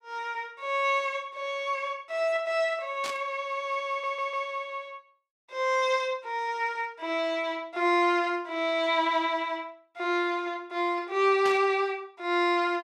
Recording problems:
burst of static; at 3 s and at 11 s; peak -4 dB vs average level
stutter; at 4 s

